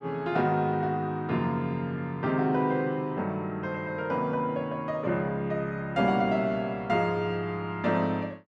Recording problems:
none

